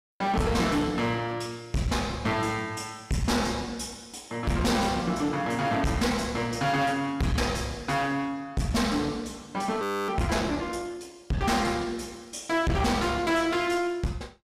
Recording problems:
distorted audio; hard clipping, uneven, signal-to-distortion ratio 6 dB
frozen audio; at 10 s

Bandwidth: 15 kHz